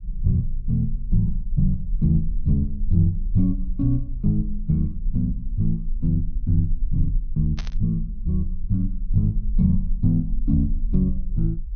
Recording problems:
treble cut off; nothing above 6.4 kHz
low-frequency rumble; below 38 Hz, strongest tone 22 Hz, SNR 7 dB
burst of static; at 7.5 s; peak -8 dB vs average level

